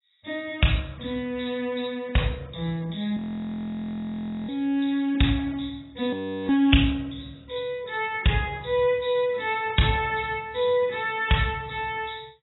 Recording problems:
lossy codec; AAC, log-spectral distance 6 dB, nothing above 3.9 kHz
audio freezing; at 3 s for 1.5 s and at 6 s

